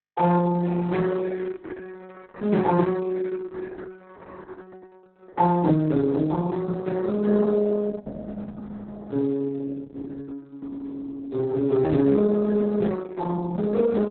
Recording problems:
lossy compression; Speex, then Opus, log-spectral distance 3 dB, nothing above 4 kHz

